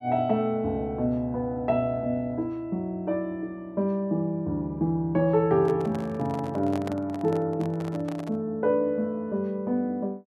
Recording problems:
microphone handling noise; from 5.5 to 8.5 s; peak -5 dB vs average level

